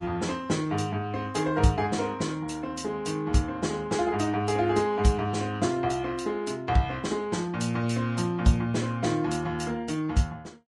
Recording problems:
lossy compression; Vorbis, log-spectral distance 3 dB, nothing above 10.1 kHz

